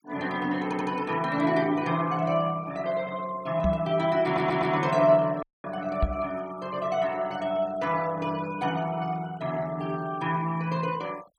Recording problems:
noise reduction artefacts; signal-to-artefact ratio 22 dB
audio stuttering; at 0.5 s and at 4.5 s
microphone thump; at 3.5 s and at 6 s; peak +4 dB vs average level
dropout; at 5.5 s

